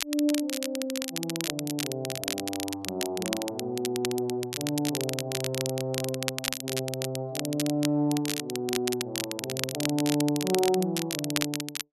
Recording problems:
crackling; vinyl, SNR 3 dB

